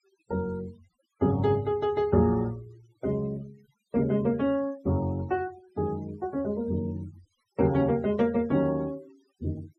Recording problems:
noise reduction artefacts; signal-to-artefact ratio 25 dB

